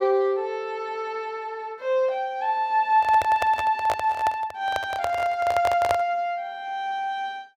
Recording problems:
microphone handling noise; from 3 to 6 s; peak +3 dB vs average level

